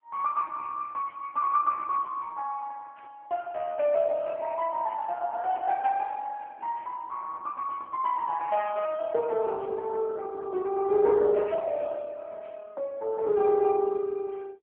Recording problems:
telephone audio; 150 Hz to 2.2 kHz, AMR-NB

